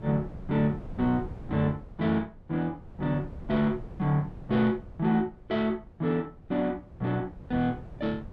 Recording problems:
wind on the microphone; below 190 Hz, SNR 16 dB

